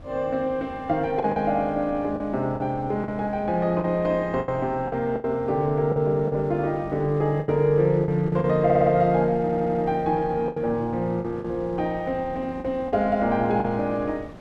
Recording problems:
wind noise; below 470 Hz, SNR 20 dB
lost packets; 7% of the sound replaced, filled with the last packet
audio stuttering; at 8.5 s and at 9.5 s

